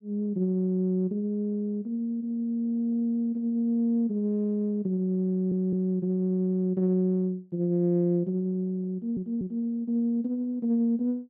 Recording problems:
audio stuttering; at 5.5 s and at 9 s

